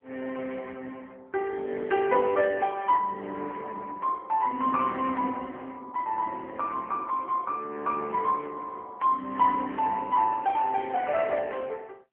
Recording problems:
phone line; 220 Hz to 3.2 kHz, AMR-NB

